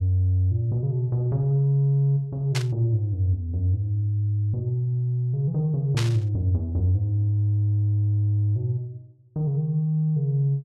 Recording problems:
static burst; at 2.5 s and at 6 s; peak -2 dB vs average level

